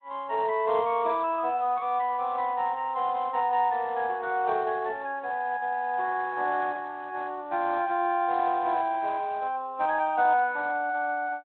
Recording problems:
phone line; 300 Hz to 3.8 kHz, Speex

